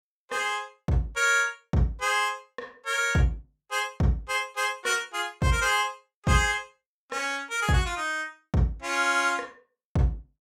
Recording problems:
none

